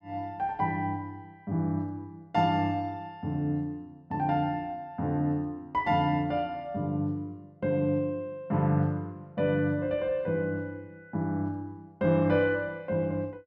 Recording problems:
none

